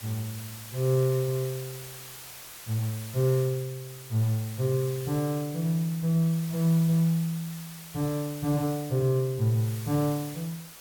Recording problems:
background hiss; slope 0 dB per octave, SNR 14 dB

